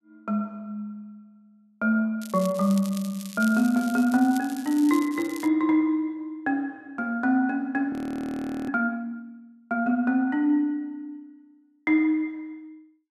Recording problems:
crackle; from 2 to 5.5 s; loose cable, SNR 17 dB
audio freezing; at 8 s for 1 s

